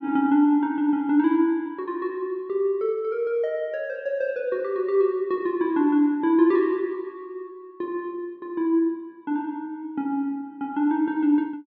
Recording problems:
none

